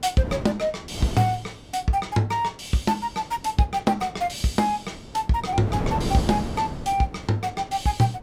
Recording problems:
wind on the microphone; below 430 Hz, SNR 9 dB

